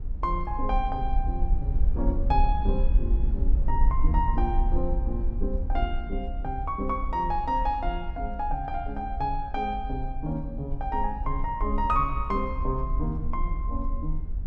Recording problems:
wind noise; below 52 Hz, SNR 0 dB

